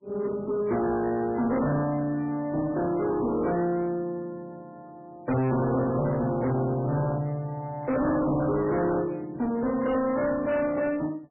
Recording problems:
lossy compression; MP3, log-spectral distance 2 dB, nothing above 2.4 kHz
distorted audio; soft clipping, signal-to-distortion ratio 7 dB

